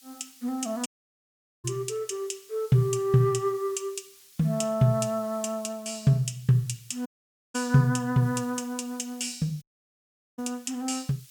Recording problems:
hiss; SNR 24 dB
audio cutting out; at 1 s for 1 s, at 7 s and at 9.5 s for 1 s

